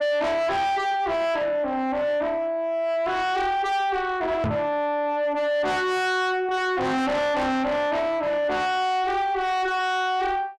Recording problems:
distortion; soft clipping, signal-to-distortion ratio 7 dB
microphone bump; at 4.5 s; peak +1 dB vs average level

